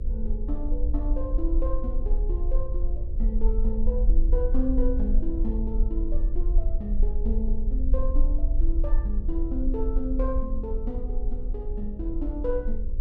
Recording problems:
hum; 60 Hz, harmonics up to 540 Hz, SNR 13 dB
rumble; below 42 Hz, strongest tone 22 Hz, SNR -5 dB

